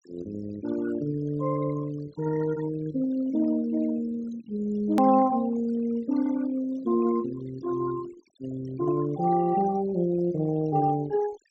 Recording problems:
low-pass filter; nothing above 8 kHz
noise reduction artefacts; signal-to-artefact ratio 19 dB
edit click; at 5 s

